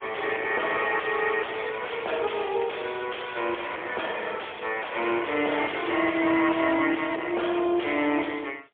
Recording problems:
phone line; 280 Hz to 3.4 kHz, AMR-NB, then MP3
distorted audio; soft clipping, signal-to-distortion ratio 6 dB

